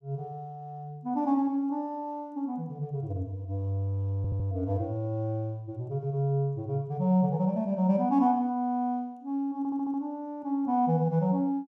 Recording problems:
stutter; at 4 s and at 9.5 s

